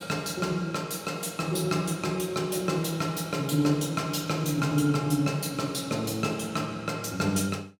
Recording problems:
none

